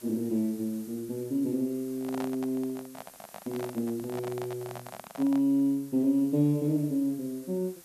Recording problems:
background hiss; slope -1 dB per octave, SNR 21 dB
handling noise; from 2 to 5.5 s; peak -5 dB vs average level

